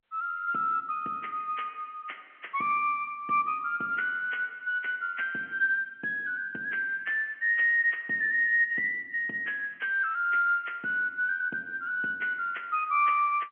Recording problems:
telephone audio; 220 Hz to 3.2 kHz, G.711

